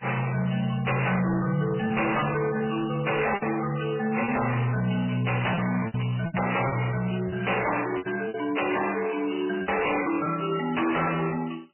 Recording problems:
lossy compression; MP3, log-spectral distance 10 dB, nothing above 2.9 kHz
distortion; soft clipping, signal-to-distortion ratio 10 dB
lost packets; 6% of the sound replaced, filled with repeated pitch periods

